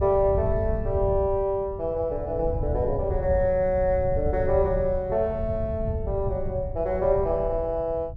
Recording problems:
wind noise; below 100 Hz, SNR 7 dB

